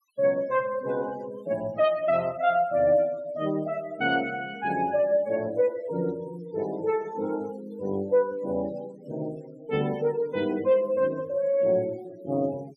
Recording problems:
noise reduction artefacts; signal-to-artefact ratio 22 dB

